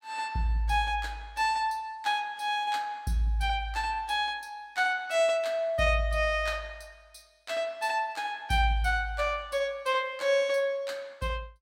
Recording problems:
none

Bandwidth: 16.5 kHz